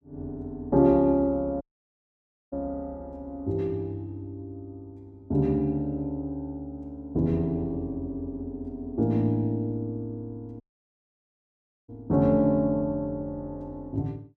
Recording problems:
dropout; at 1.5 s for 1 s and at 11 s for 1.5 s

